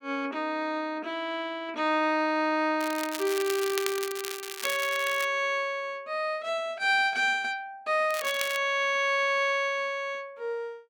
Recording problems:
crackling; from 3 to 5.5 s and at 8 s; loose cable, SNR 9 dB

